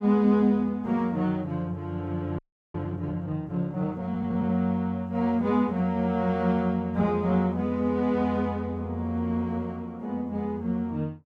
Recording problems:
audio freezing; at 2.5 s

